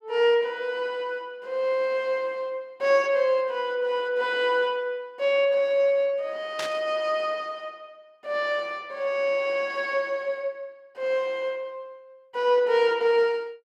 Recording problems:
burst of static; at 6.5 s; peak -3 dB vs average level

